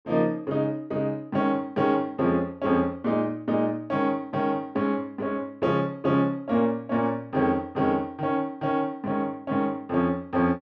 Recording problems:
none

